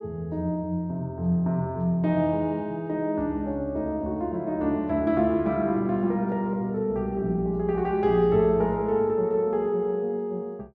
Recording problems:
none

